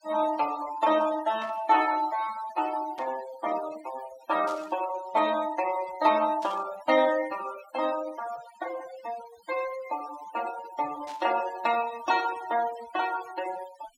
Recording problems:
noise reduction artefacts; signal-to-artefact ratio 14 dB
static burst; 5 times, first at 1.5 s; peak -13 dB vs average level

